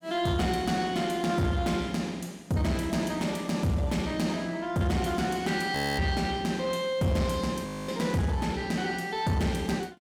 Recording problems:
distortion; soft clipping, signal-to-distortion ratio 12 dB
audio freezing; at 6 s and at 7.5 s

